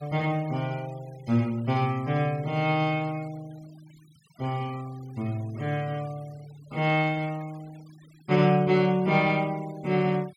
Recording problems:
noise reduction artefacts; signal-to-artefact ratio 25 dB

